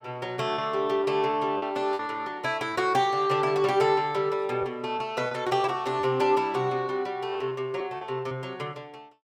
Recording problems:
packet loss; 4% of the sound replaced, filled with repeated pitch periods

